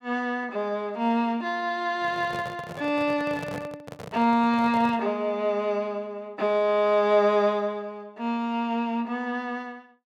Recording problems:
handling noise; from 2 to 5 s; peak -7 dB vs average level

